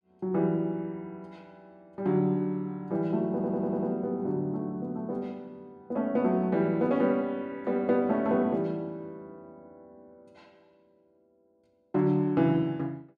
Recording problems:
audio stuttering; at 3.5 s

